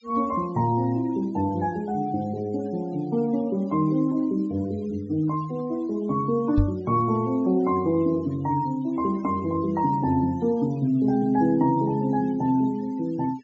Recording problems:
treble cut off; nothing above 8 kHz
denoising artefacts; signal-to-artefact ratio 26 dB
microphone bump; at 6.5 s; peak +5 dB vs average level

